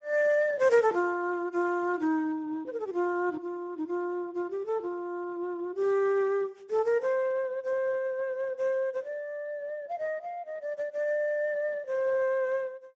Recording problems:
lossy codec; Speex, log-spectral distance 2 dB

